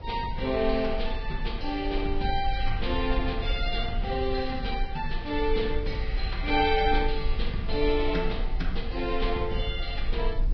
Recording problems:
codec artefacts; Vorbis, log-spectral distance 2 dB
hiss; slope -1 dB per octave, SNR 29 dB
low-frequency rumble; below 46 Hz, strongest tone 20 Hz, SNR 5 dB
wind noise; below 450 Hz, SNR 18 dB

